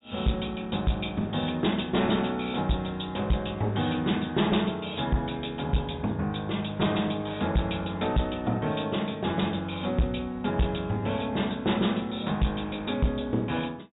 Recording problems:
low-pass filter; nothing above 4 kHz
distorted audio; hard clipping, uneven, signal-to-distortion ratio 10 dB

